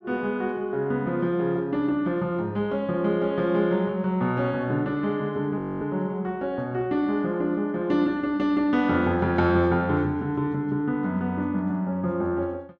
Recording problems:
audio freezing; at 5.5 s

